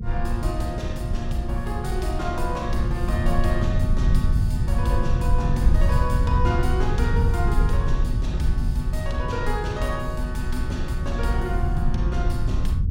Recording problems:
hum; 50 Hz, harmonics up to 500 Hz, SNR 21 dB
rumble; below 94 Hz, SNR -4 dB

